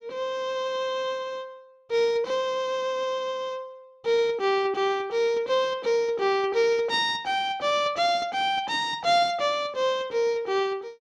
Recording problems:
none

